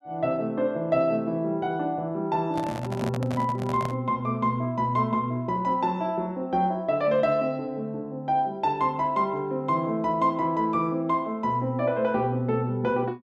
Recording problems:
microphone handling noise; from 2.5 to 4 s; peak -4 dB vs average level

